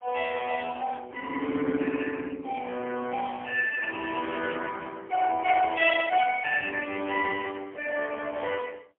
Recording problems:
phone line; 220 Hz to 3.1 kHz, AMR-NB, then MP3

